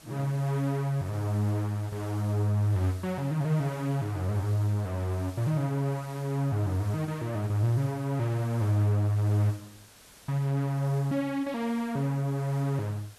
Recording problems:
hiss; slope -2 dB per octave, SNR 22 dB

